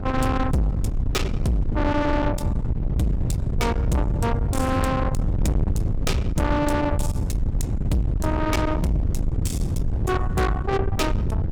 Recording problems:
distortion; soft clipping, signal-to-distortion ratio 6 dB
wind on the microphone; below 180 Hz, SNR 1 dB

